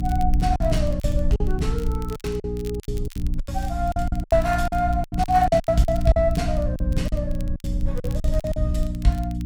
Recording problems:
hum; 60 Hz, harmonics up to 300 Hz, SNR 5 dB
wind on the microphone; below 64 Hz, SNR 5 dB
crackling; vinyl, SNR 23 dB
packet loss; 14% of the sound replaced, filled with silence

